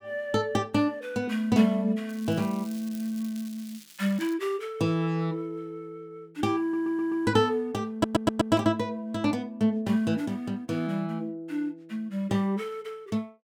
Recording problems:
crackle; from 2 to 4.5 s; loose cable, SNR 20 dB
audio stuttering; at 6.5 s and at 8 s

